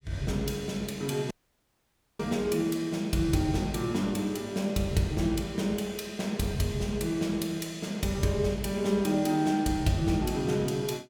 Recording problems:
dropout; at 1.5 s for 1 s

